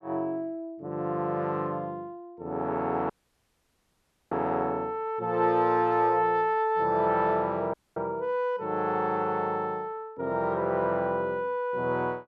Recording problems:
dropout; at 3 s for 1 s and at 7.5 s

